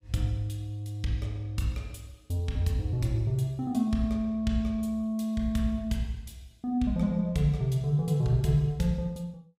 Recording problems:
none

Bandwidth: 15.5 kHz